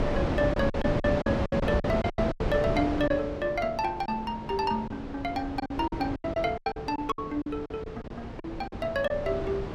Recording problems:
wind noise; below 580 Hz, SNR 3 dB
lost packets; 12% of the sound replaced, filled with silence

